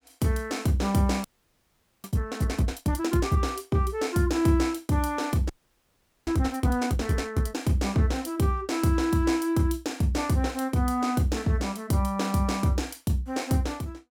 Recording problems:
frozen audio; at 1 s for 1 s and at 5.5 s for 1 s

